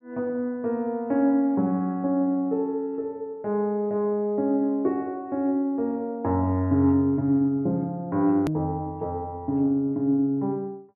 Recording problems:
low-pass filter; nothing above 3.1 kHz
edit click; at 8.5 s

